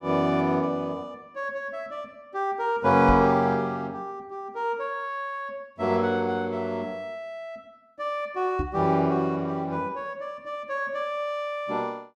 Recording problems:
microphone thump; at 3 s and at 8.5 s; peak +2 dB vs average level

